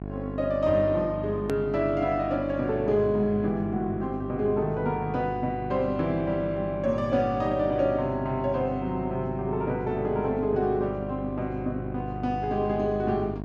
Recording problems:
mains hum; 50 Hz, harmonics up to 1.1 kHz, SNR 9 dB
hard cut with a click; at 1.5 s

